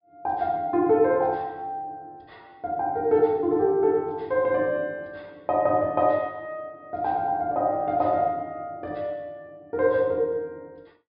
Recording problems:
low-pass filter; nothing above 5.5 kHz

